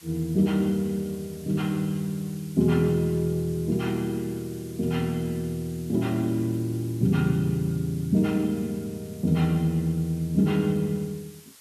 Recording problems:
background hiss; slope +2 dB per octave, SNR 22 dB

